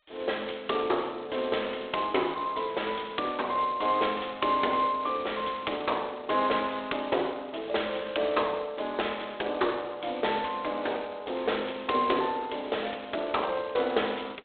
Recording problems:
telephone audio; 320 Hz to 3.8 kHz, G.726

